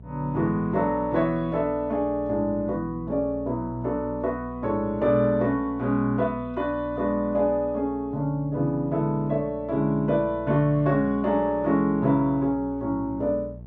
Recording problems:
electrical hum; 60 Hz, harmonics up to 660 Hz, SNR 17 dB

